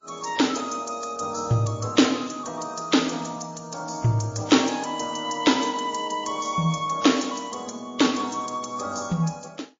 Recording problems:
lossy compression; AAC, then MP3, log-spectral distance 6 dB, nothing above 7.1 kHz

